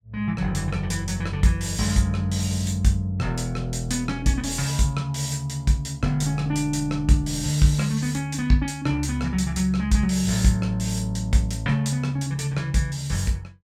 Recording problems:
none

